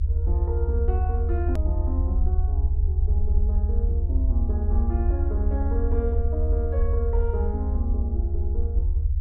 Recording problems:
rumble; below 76 Hz, SNR -9 dB
edit click; at 1.5 s

